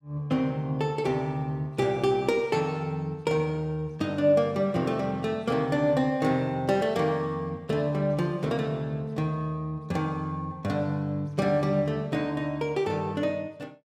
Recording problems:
none

